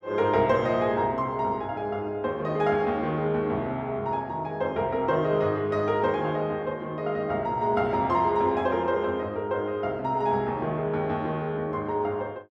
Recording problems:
none

